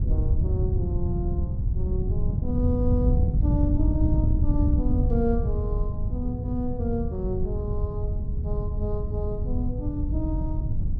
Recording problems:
wind noise; below 110 Hz, SNR -5 dB

